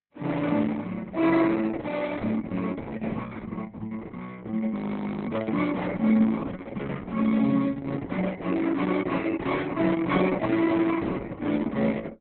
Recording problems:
codec artefacts; Opus, log-spectral distance 4 dB, nothing above 4 kHz
frozen audio; at 4.5 s for 0.5 s

